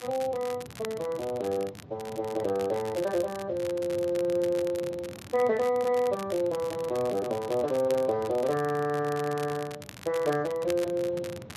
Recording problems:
codec artefacts; Speex, then Speex, log-spectral distance 2 dB
wind noise; below 370 Hz, SNR 17 dB
crackling; vinyl, SNR 16 dB

